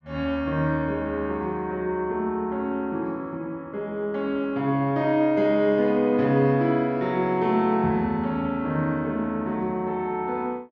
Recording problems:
none

